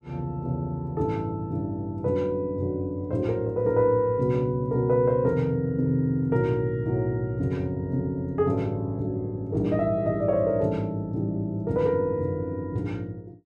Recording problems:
none

